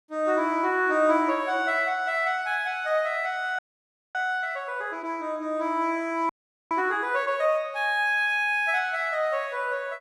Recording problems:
audio freezing; at 3.5 s for 0.5 s and at 6.5 s

